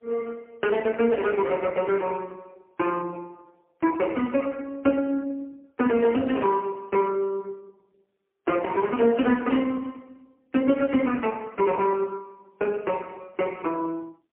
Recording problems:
telephone audio; 240 Hz to 3.1 kHz, AMR-NB, then MP3

